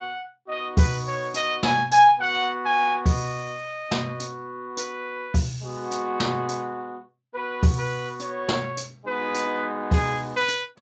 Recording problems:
lossy compression; Speex, log-spectral distance 4 dB, nothing above 7.3 kHz

